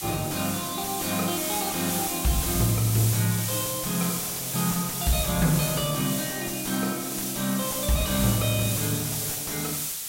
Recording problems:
distorted audio; soft clipping, signal-to-distortion ratio 9 dB
background hiss; slope +3 dB per octave, SNR 2 dB

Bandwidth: 16 kHz